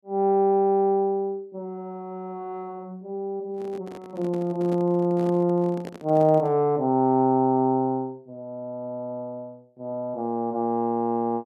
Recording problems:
handling noise; from 3.5 to 6.5 s; peak -9 dB vs average level

